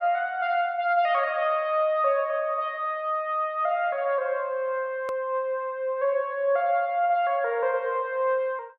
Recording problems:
low-pass filter; nothing above 5.6 kHz
edit click; at 5 s

